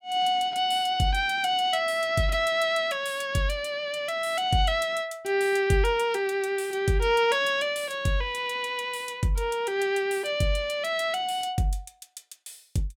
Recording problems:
none

